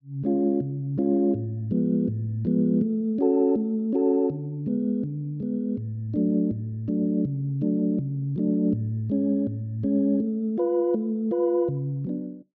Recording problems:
treble missing; nothing above 6.5 kHz

